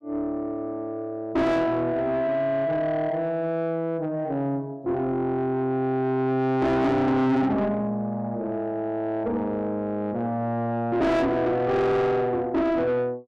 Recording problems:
distortion; soft clipping, signal-to-distortion ratio 7 dB

